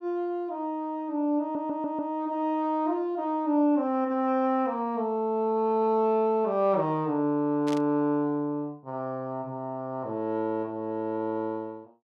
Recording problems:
stutter; at 1.5 s
burst of static; at 7.5 s; peak -8 dB vs average level

